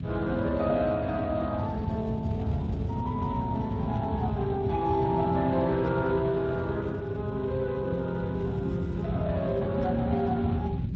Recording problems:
lossy codec; Speex, log-spectral distance 2 dB
rumble; below 160 Hz, SNR 5 dB

